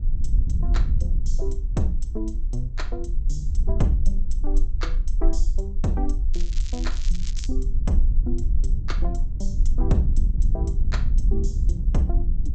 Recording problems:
low-pass filter; nothing above 8 kHz
mains hum; 50 Hz, harmonics up to 1.1 kHz, SNR 28 dB
rumble; below 38 Hz, strongest tone 22 Hz, SNR -3 dB
wind noise; below 62 Hz, SNR -4 dB
crackling; from 6.5 to 7.5 s; loose cable, SNR 10 dB

